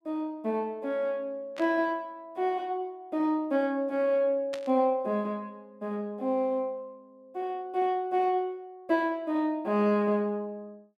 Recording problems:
burst of static; at 1.5 s and at 4.5 s; peak -7 dB vs average level

